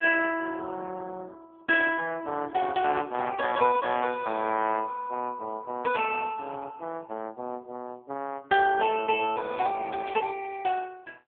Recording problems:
telephone audio; 150 Hz to 3.3 kHz, AMR-NB
static burst; at 10 s; peak -14 dB vs average level

